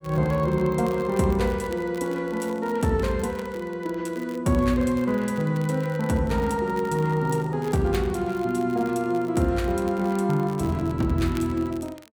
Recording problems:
crackle; vinyl, SNR 24 dB

